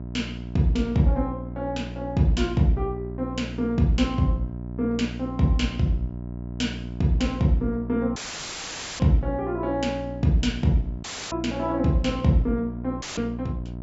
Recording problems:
treble missing; nothing above 8 kHz
hum; 60 Hz, harmonics up to 720 Hz, SNR 10 dB
audio cutting out; at 8 s for 1 s, at 11 s and at 13 s; filled with static

